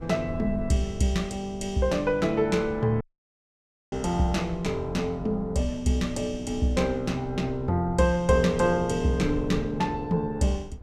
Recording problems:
wind noise; below 120 Hz, SNR 15 dB
audio cutting out; at 3 s for 1 s

